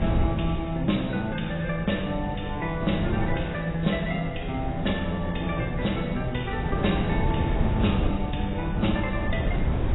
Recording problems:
lossy compression; AAC, log-spectral distance 4 dB, nothing above 3.8 kHz
wind on the microphone; below 180 Hz, SNR 3 dB

